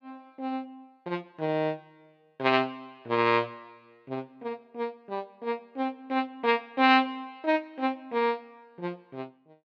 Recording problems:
none

